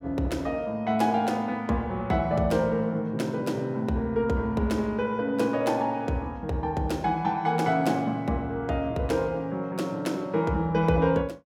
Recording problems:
none

